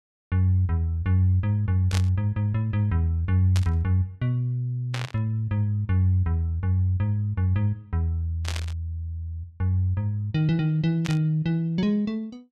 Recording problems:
burst of static; 5 times, first at 2 s; peak -4 dB vs average level

